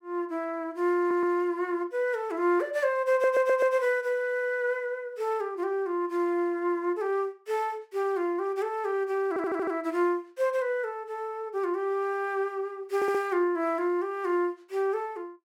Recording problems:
audio stuttering; 4 times, first at 1 s

